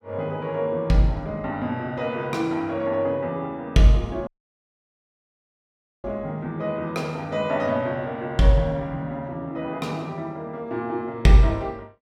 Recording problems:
audio cutting out; at 4.5 s for 2 s

